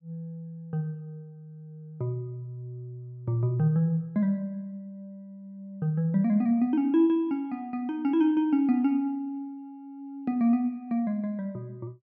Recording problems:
none

